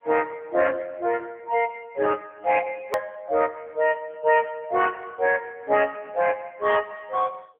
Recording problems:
telephone audio; 300 Hz to 3.3 kHz, AMR-NB
click at an edit; at 3 s

